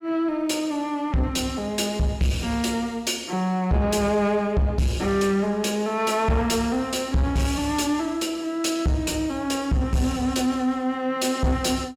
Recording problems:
distorted audio; soft clipping, signal-to-distortion ratio 10 dB

